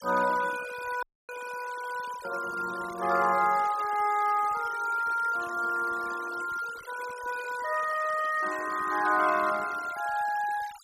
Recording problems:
noise reduction artefacts; signal-to-artefact ratio 16 dB
dropout; at 1 s

